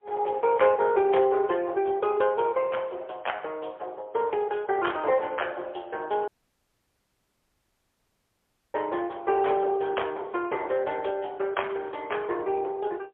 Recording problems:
phone line; 320 Hz to 3.3 kHz, AMR-NB, then MP3
dropout; at 6.5 s for 2.5 s

